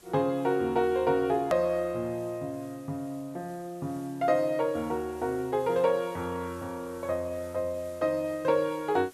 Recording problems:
hiss; slope -2 dB per octave, SNR 25 dB
edit click; at 1.5 s

